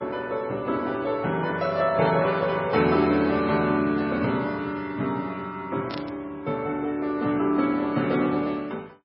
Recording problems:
lossy codec; MP3, log-spectral distance 2 dB, nothing above 5.5 kHz
burst of static; at 2 s and at 6 s; peak -5 dB vs average level

